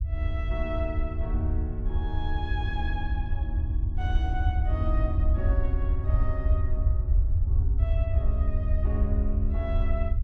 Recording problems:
rumble; below 78 Hz, SNR -9 dB

